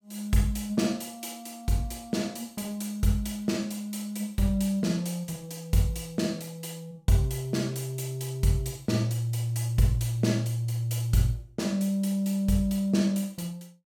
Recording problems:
none

